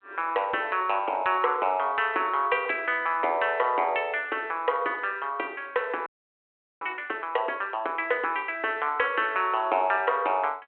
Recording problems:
telephone audio; 340 Hz to 3.3 kHz, G.726
frozen audio; at 6 s for 1 s

